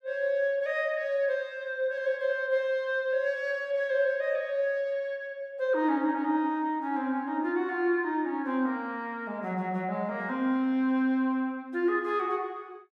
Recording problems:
none

